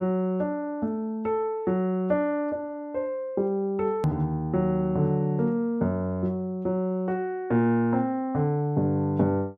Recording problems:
click at an edit; at 4 s

